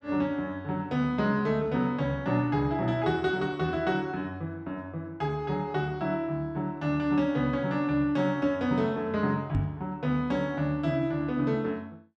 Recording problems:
knock on the microphone; at 9.5 s; peak +4 dB vs average level

